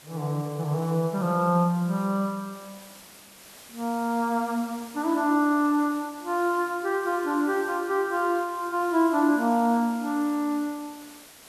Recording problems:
background hiss; slope -1 dB per octave, SNR 20 dB

